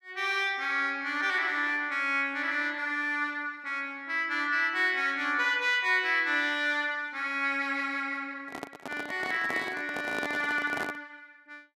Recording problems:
handling noise; from 8.5 to 11 s; peak -4 dB vs average level

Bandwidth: 14.5 kHz